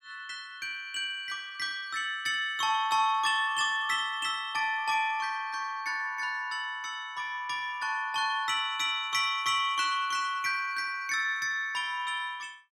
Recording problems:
none

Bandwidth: 16.5 kHz